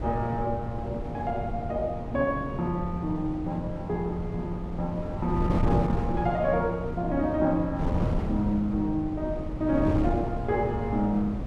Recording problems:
wind on the microphone; below 270 Hz, SNR 4 dB

